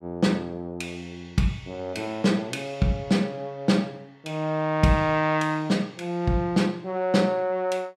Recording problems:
none

